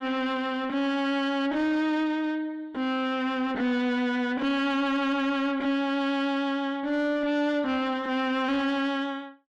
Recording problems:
distortion; soft clipping, signal-to-distortion ratio 7 dB

